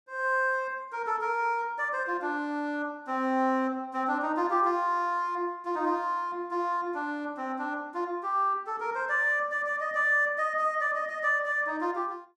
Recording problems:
none

